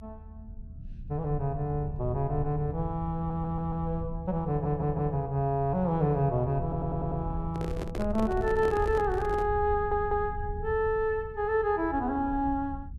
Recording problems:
rumble; below 90 Hz, SNR 10 dB
stutter; 4 times, first at 3 s
handling noise; from 7.5 to 9.5 s; peak -4 dB vs average level

